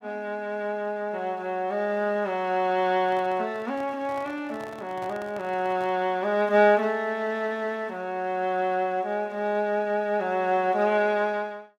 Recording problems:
handling noise; from 3 to 6 s; peak -12 dB vs average level

